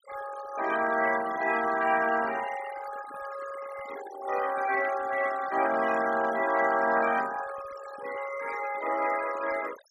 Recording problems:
noise reduction artefacts; signal-to-artefact ratio 12 dB

